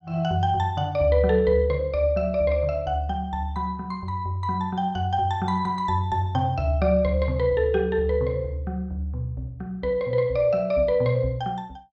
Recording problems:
none

